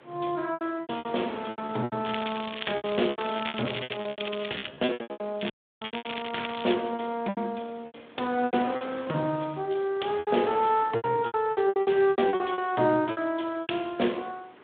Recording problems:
telephone audio; 190 Hz to 3.6 kHz, Speex
wind on the microphone; below 1.9 kHz, SNR 19 dB
packet loss; 19% of the sound replaced, filled with repeated pitch periods
crackle; from 2 to 4.5 s and from 5.5 to 6.5 s; loose cable, SNR 8 dB
dropout; at 5.5 s

